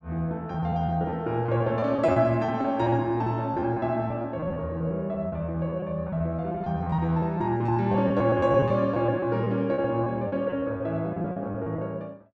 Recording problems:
packet loss; 14% of the sound replaced, filled with repeated pitch periods

